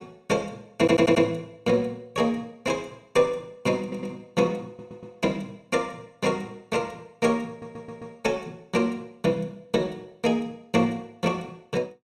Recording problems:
audio stuttering; 4 times, first at 1 s

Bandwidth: 14.5 kHz